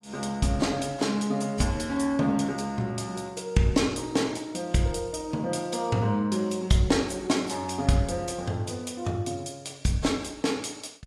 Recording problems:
lossy codec; AAC, log-spectral distance 3 dB, nothing above 11 kHz

